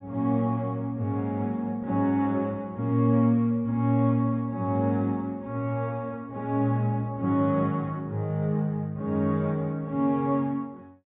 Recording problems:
low-pass filter; nothing above 4 kHz

